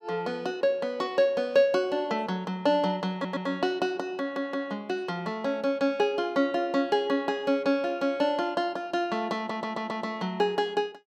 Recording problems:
audio stuttering; at 3 s, at 4 s and at 9.5 s

